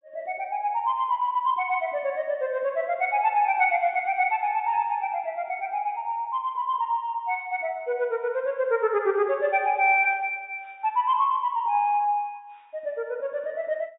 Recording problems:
low-pass filter; nothing above 4 kHz

